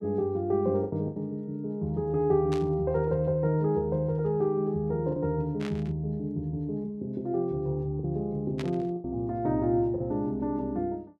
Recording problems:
packet loss; 3% of the sound replaced, filled with the last packet
static burst; at 2.5 s, at 5.5 s and at 8.5 s; peak -7 dB vs average level

